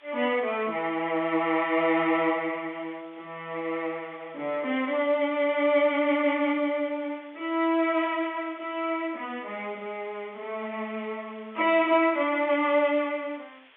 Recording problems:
telephone audio; 300 Hz to 3.5 kHz, G.711
hiss; SNR 27 dB

